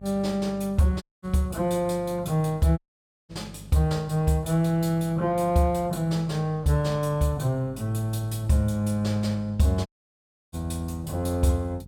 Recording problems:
hum; 50 Hz, harmonics up to 500 Hz, SNR 20 dB
dropout; at 1 s, at 3 s for 0.5 s and at 10 s for 0.5 s

